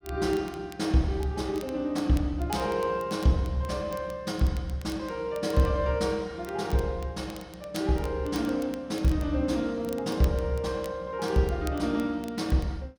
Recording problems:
crackle; vinyl, SNR 21 dB

